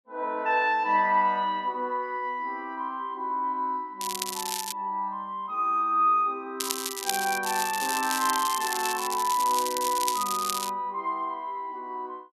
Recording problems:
crackle; at 4 s and from 6.5 to 11 s; loose cable, SNR 4 dB

